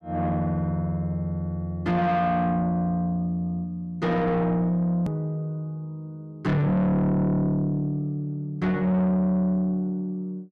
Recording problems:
distortion; soft clipping, signal-to-distortion ratio 7 dB
edit click; at 5 s

